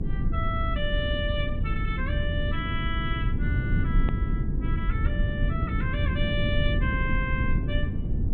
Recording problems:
treble missing; nothing above 4 kHz
hum; 60 Hz, harmonics up to 540 Hz, SNR 17 dB
low-frequency rumble; below 120 Hz, SNR -5 dB
edit click; at 4 s

